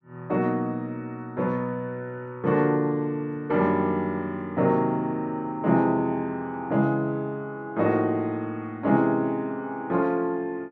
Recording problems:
none

